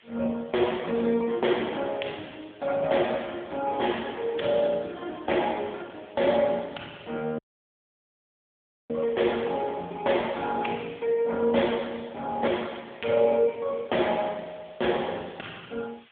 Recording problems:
telephone audio; 190 Hz to 3.5 kHz, AMR-NB
background hiss; SNR 27 dB
dropout; at 7.5 s for 1.5 s

